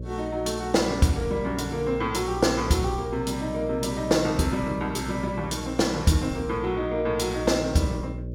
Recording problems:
hum; 60 Hz, harmonics up to 600 Hz, SNR 11 dB

